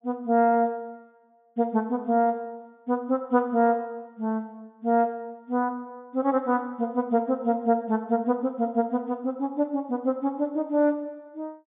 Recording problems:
treble missing; nothing above 3.6 kHz

